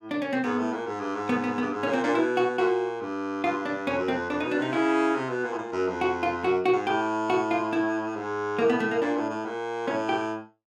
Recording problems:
none

